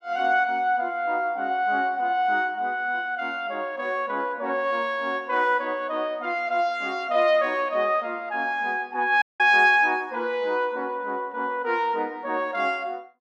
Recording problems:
dropout; at 9 s

